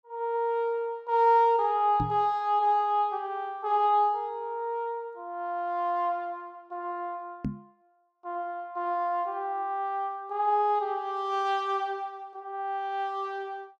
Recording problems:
knock on the microphone; at 2 s and at 7.5 s; peak 0 dB vs average level

